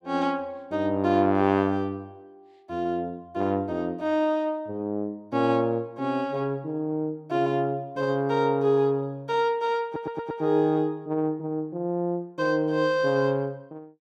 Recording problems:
stutter; at 10 s

